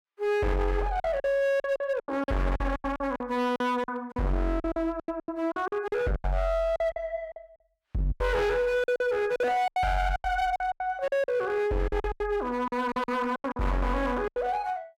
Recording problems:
distorted audio; hard clipping, signal-to-distortion ratio 8 dB
lost packets; 16% of the sound replaced, filled with silence

